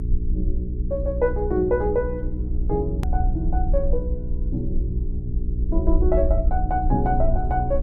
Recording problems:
electrical hum; 60 Hz, harmonics up to 420 Hz, SNR 4 dB
low-frequency rumble; below 54 Hz, SNR 2 dB
edit click; at 3 s

